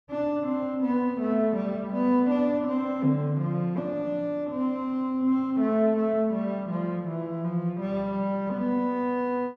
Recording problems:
none

